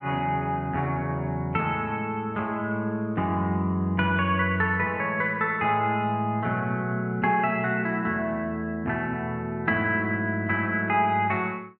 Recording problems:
none

